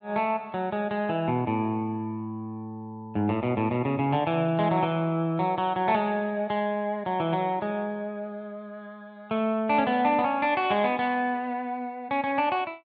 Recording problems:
none

